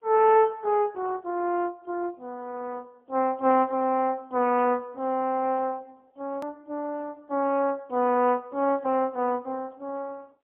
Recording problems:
telephone audio; 280 Hz to 3.1 kHz, AMR-NB, then MP3
click at an edit; at 6.5 s

